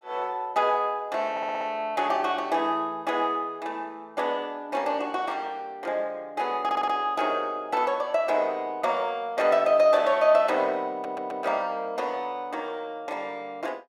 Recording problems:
audio stuttering; at 1.5 s, at 6.5 s and at 11 s

